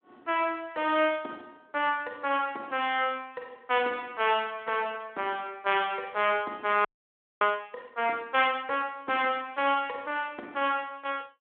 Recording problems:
telephone audio; 260 Hz to 3.4 kHz, Speex
audio freezing; at 7 s for 0.5 s

